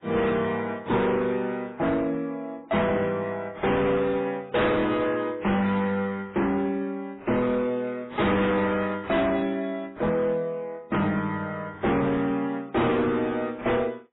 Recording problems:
codec artefacts; MP3, then AAC, log-spectral distance 2 dB, nothing above 3.8 kHz
distortion; hard clipping, signal-to-distortion ratio 6 dB

